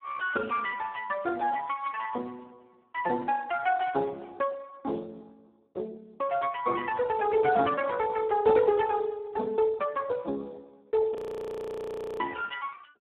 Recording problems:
telephone audio; 220 Hz to 2.2 kHz, Speex
audio freezing; at 11 s for 1 s

